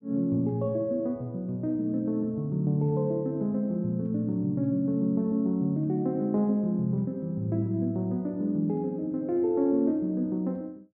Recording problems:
none

